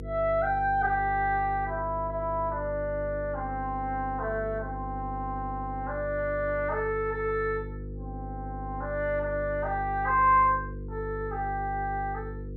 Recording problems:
hum; 50 Hz, harmonics up to 500 Hz, SNR 10 dB

